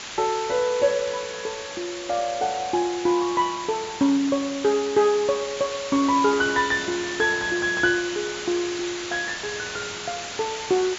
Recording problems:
treble missing; nothing above 7.4 kHz
hiss; slope 0 dB per octave, SNR 9 dB

